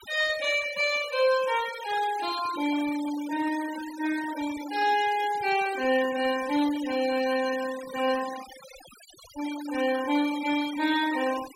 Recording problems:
denoising artefacts; signal-to-artefact ratio 14 dB

